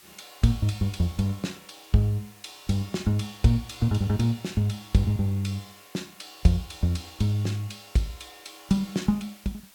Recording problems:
hiss; slope +1 dB per octave, SNR 24 dB

